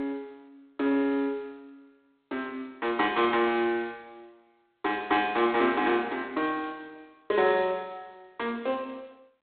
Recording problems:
phone line; 240 Hz to 4 kHz, G.726

